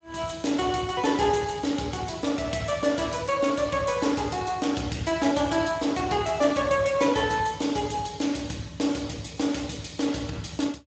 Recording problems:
codec artefacts; Speex, log-spectral distance 6 dB, nothing above 7.6 kHz

